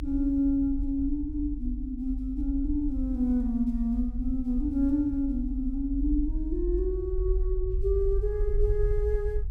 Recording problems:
rumble; below 50 Hz, SNR 4 dB

